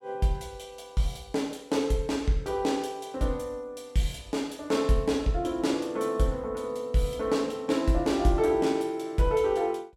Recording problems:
none

